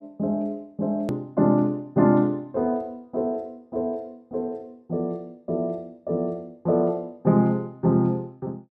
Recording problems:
click at an edit; at 1 s

